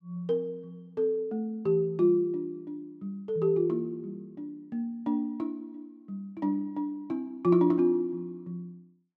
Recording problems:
none

